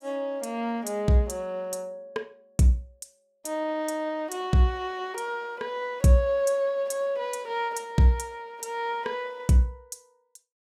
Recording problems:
none

